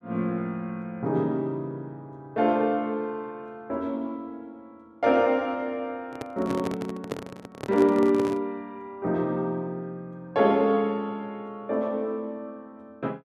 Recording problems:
handling noise; from 6 to 8.5 s; peak 0 dB vs average level

